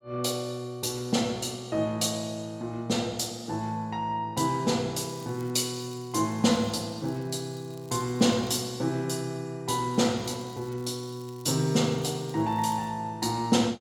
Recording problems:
crackle; from 5 to 8.5 s and from 10 to 13 s; loose cable, SNR 26 dB

